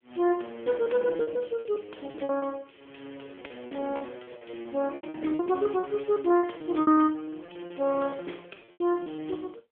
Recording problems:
phone line; 280 Hz to 3.4 kHz, AMR-NB
lost packets; 16% of the sound replaced, filled with repeated pitch periods

